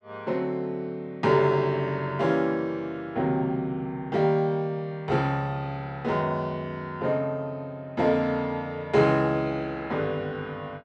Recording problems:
none

